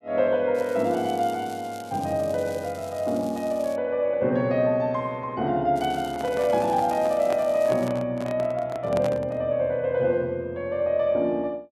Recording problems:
crackling; from 0.5 to 4 s and from 6 to 8 s; loose cable, SNR 22 dB
microphone handling noise; from 6 to 9.5 s; peak -3 dB vs average level

